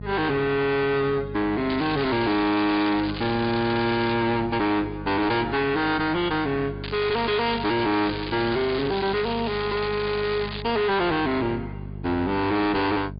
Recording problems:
treble cut off; nothing above 4.9 kHz
lossy compression; MP3, log-spectral distance 4 dB
distorted audio; hard clipping, uneven, signal-to-distortion ratio 4 dB
hum; 50 Hz, harmonics up to 650 Hz, SNR 13 dB
crackle; from 1.5 to 4 s and from 7 to 11 s; loose cable, SNR 11 dB

